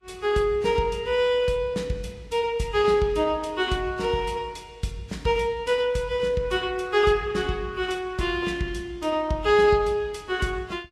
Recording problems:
codec artefacts; Vorbis, log-spectral distance 2 dB, nothing above 12.7 kHz

